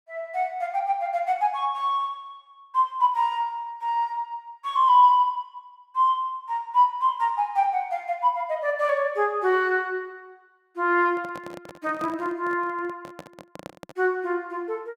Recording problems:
handling noise; from 11 to 14 s; peak -10 dB vs average level

